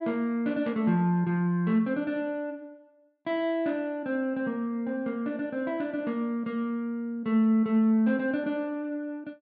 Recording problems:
none

